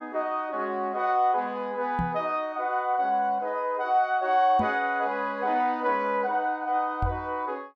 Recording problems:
microphone bump; at 2 s, at 4.5 s and at 7 s; peak 0 dB vs average level

